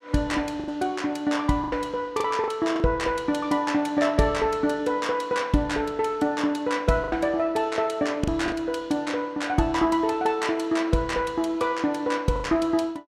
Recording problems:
packet loss; 4% of the sound replaced, filled with the last packet

